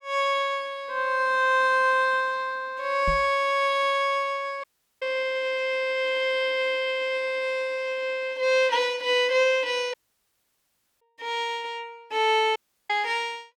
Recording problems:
microphone thump; at 3 s; peak -3 dB vs average level
dropout; at 4.5 s, at 10 s for 1 s and at 13 s

